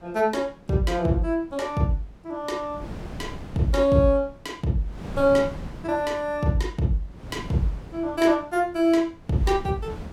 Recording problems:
wind on the microphone; below 320 Hz, SNR 16 dB

